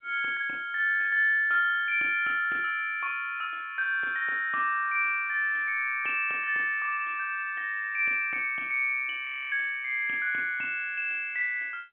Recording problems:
telephone audio; 280 Hz to 3.5 kHz, G.711
frozen audio; at 9.5 s

